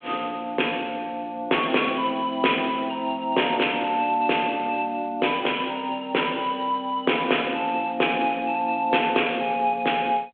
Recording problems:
phone line; 300 Hz to 3.4 kHz, G.726

